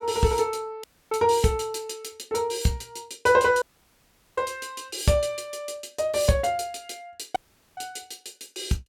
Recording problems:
audio cutting out; at 1 s, at 3.5 s for 1 s and at 7.5 s

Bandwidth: 17 kHz